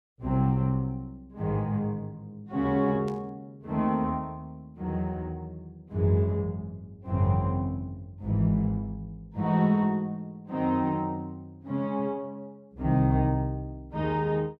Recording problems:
burst of static; at 3 s; peak -16 dB vs average level

